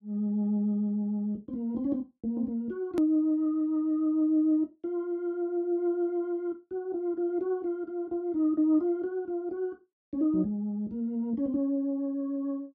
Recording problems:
edit click; at 3 s

